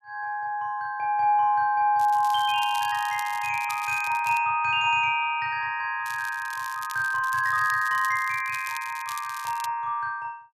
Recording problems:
crackling; from 2 to 4.5 s and from 6 to 9.5 s; loose cable, SNR 17 dB

